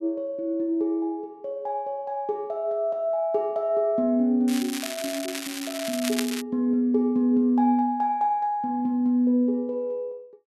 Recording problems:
crackling; from 4.5 to 6.5 s; loose cable, SNR 8 dB

